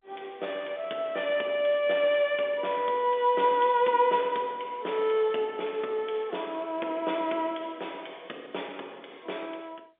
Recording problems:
telephone audio; 240 Hz to 3.6 kHz, G.711

